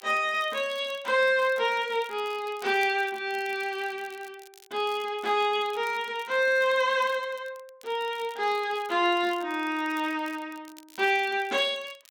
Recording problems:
crackling; vinyl, SNR 25 dB

